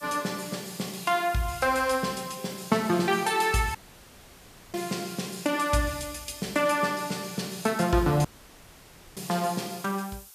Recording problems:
background hiss; SNR 18 dB
dropout; at 4 s for 1 s and at 8.5 s for 1 s

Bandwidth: 14.5 kHz